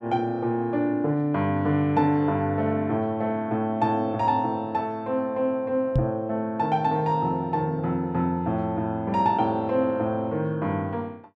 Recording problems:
knock on the microphone; at 6 s; peak +5 dB vs average level

